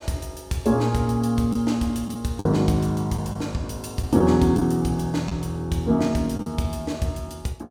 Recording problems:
packet loss; 3% of the sound replaced, filled with the last packet

